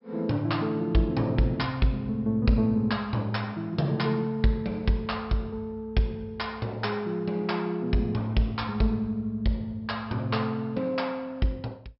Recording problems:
treble cut off; nothing above 5.4 kHz

